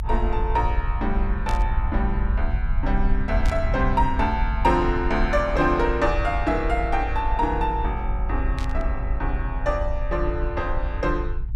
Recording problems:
low-frequency rumble; below 56 Hz, SNR 2 dB
static burst; at 1.5 s, at 3.5 s and at 8.5 s; peak -7 dB vs average level

